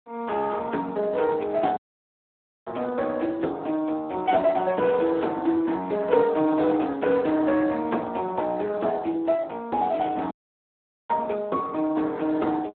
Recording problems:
telephone audio; 220 Hz to 3.6 kHz, Speex
dropout; at 2 s for 1 s and at 10 s for 1 s
crackling; from 4 to 5.5 s and at 10 s; loose cable, SNR 27 dB

